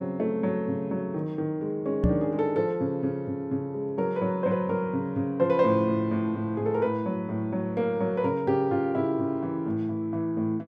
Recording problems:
microphone bump; at 2 s; peak +7 dB vs average level

